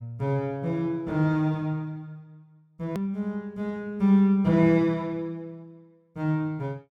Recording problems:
hard cut with a click; at 3 s

